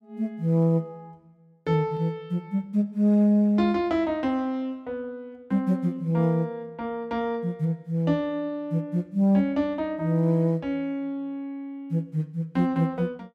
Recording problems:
none

